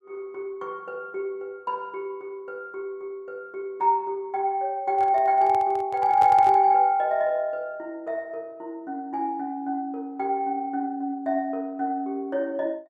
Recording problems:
handling noise; from 5 to 6.5 s; peak -5 dB vs average level

